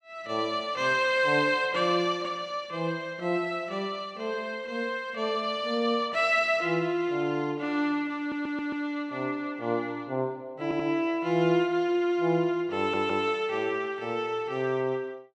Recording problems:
audio stuttering; at 8 s, at 11 s and at 13 s

